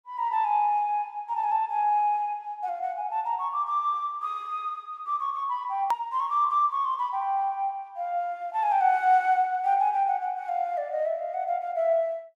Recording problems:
edit click; at 6 s

